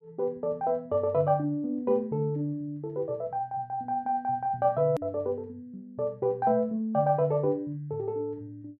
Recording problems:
hard cut with a click; at 5 s

